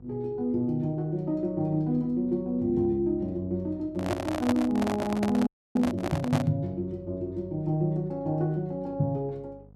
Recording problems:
electrical hum; 50 Hz, harmonics up to 750 Hz, SNR 23 dB
microphone handling noise; from 4 to 6.5 s; peak +3 dB vs average level
frozen audio; at 5.5 s

